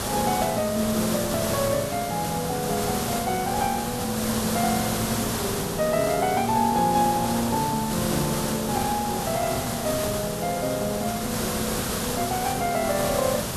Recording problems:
hiss; SNR 3 dB

